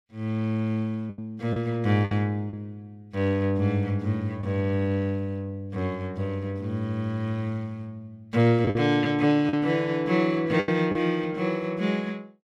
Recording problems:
lost packets; 4% of the sound replaced, filled with the last packet

